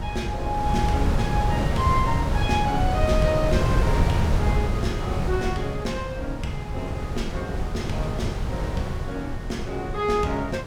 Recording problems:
wind noise; below 190 Hz, SNR -2 dB

